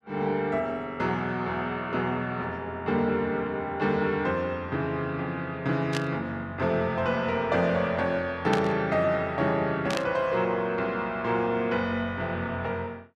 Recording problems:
burst of static; at 6 s, at 8.5 s and at 10 s; peak 0 dB vs average level

